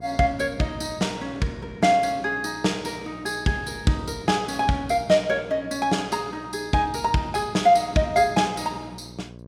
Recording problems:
hum; 60 Hz, harmonics up to 1 kHz, SNR 21 dB

